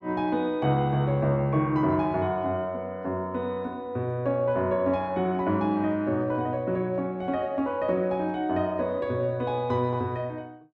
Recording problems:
none

